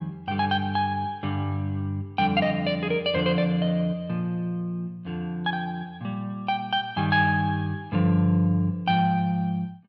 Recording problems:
none

